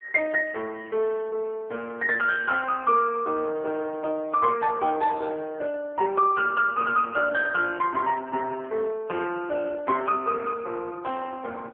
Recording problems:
phone line; 300 Hz to 2.8 kHz, AMR-NB

